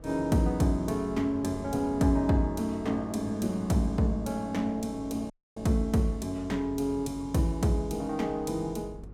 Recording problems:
hum; 50 Hz, harmonics up to 500 Hz, SNR 21 dB
wind noise; below 300 Hz, SNR 21 dB
audio cutting out; at 5.5 s

